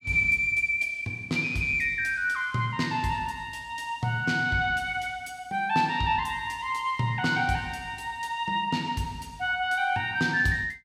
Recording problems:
none

